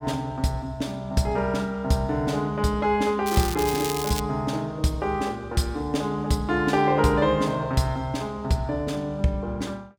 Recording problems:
crackling; at 3.5 s; loose cable, SNR 7 dB

